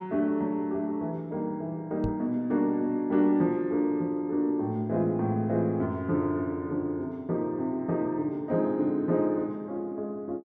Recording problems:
microphone thump; at 2 s; peak -1 dB vs average level

